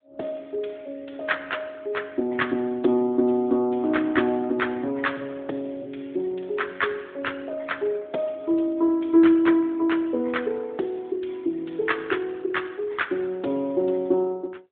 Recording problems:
phone line; 260 Hz to 3.6 kHz, AMR-NB

